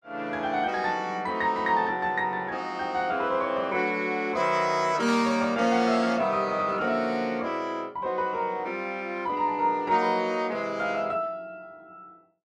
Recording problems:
static burst; at 5 s; peak -8 dB vs average level

